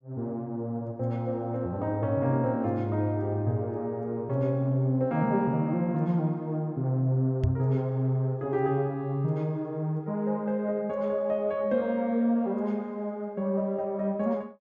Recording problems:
knock on the microphone; at 7.5 s; peak +4 dB vs average level

